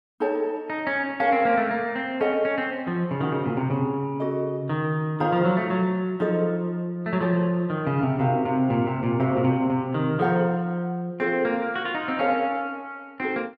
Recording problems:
none

